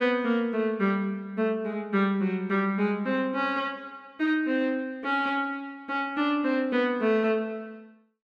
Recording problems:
none

